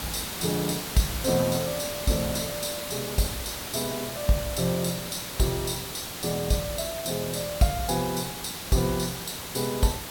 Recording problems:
hiss; slope -2 dB per octave, SNR 5 dB

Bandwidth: 17 kHz